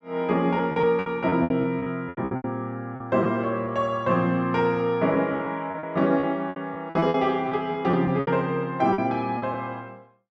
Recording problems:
lost packets; 12% of the sound replaced, filled with repeated pitch periods

